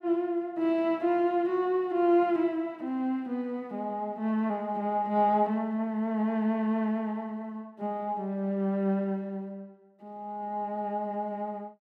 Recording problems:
none

